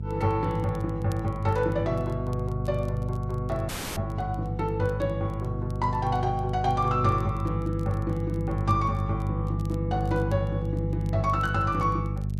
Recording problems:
electrical hum; 50 Hz, harmonics up to 400 Hz, SNR 2 dB
crackling; vinyl, SNR 29 dB
dropout; at 3.5 s

